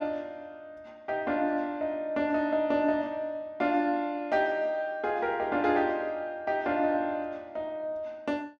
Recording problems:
none

